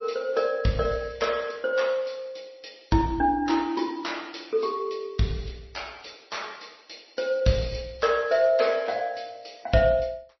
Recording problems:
codec artefacts; MP3, then MP3, log-spectral distance 7 dB, nothing above 5.8 kHz

